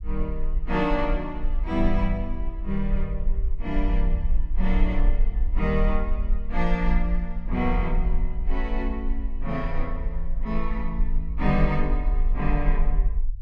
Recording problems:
low-frequency rumble; below 40 Hz, strongest tone 20 Hz, SNR 0 dB

